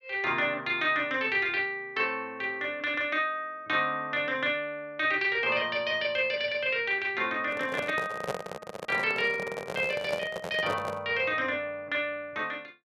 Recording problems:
handling noise; from 7.5 to 11 s; peak 0 dB vs average level

